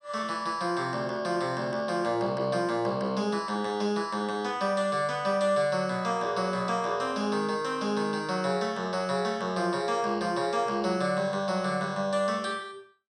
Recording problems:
none

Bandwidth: 13.5 kHz